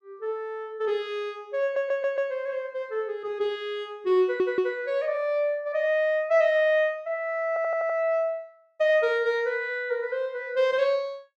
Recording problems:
audio stuttering; at 1.5 s, at 4 s and at 7.5 s

